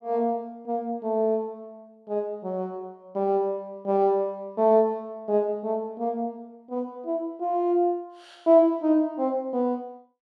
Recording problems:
none

